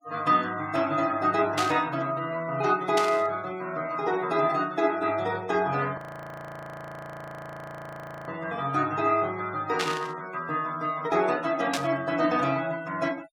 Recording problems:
noise reduction artefacts; signal-to-artefact ratio 23 dB
burst of static; 4 times, first at 1.5 s; peak +2 dB vs average level
frozen audio; at 6 s for 2.5 s

